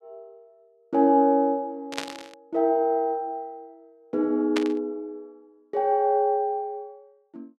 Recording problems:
static burst; at 2 s and at 4.5 s; peak -1 dB vs average level

